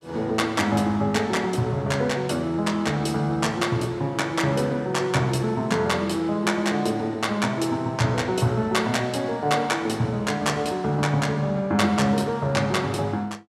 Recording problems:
none

